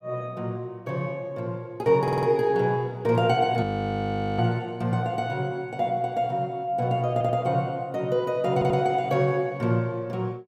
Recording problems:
stutter; at 2 s, at 7 s and at 8.5 s
frozen audio; at 3.5 s for 1 s

